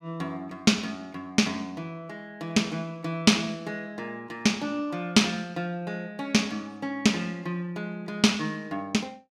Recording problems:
none

